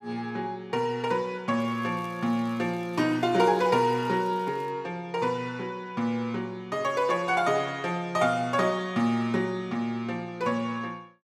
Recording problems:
crackle; from 1.5 to 4.5 s; loose cable, SNR 28 dB

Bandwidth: 14.5 kHz